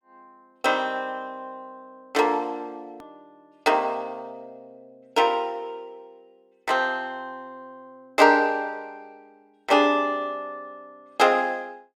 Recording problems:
click at an edit; at 3 s

